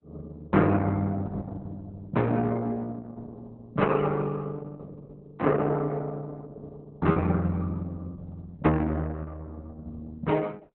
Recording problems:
lossy compression; Opus, log-spectral distance 3 dB
packet loss; 0.4% of the sound replaced, filled with repeated pitch periods

